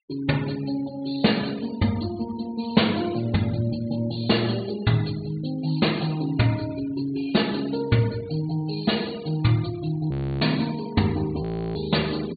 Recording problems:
low-pass filter; nothing above 4.6 kHz
noise reduction artefacts; signal-to-artefact ratio 19 dB
frozen audio; at 10 s and at 11 s

